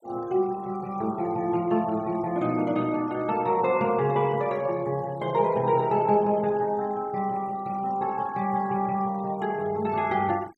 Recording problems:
noise reduction artefacts; signal-to-artefact ratio 25 dB

